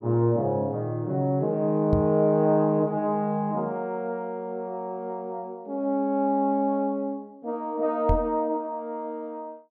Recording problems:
knock on the microphone; at 2 s and at 8 s; peak +4 dB vs average level

